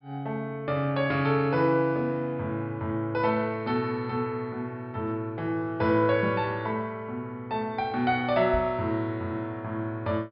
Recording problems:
low-pass filter; nothing above 5.5 kHz
microphone thump; at 8.5 s; peak -2 dB vs average level

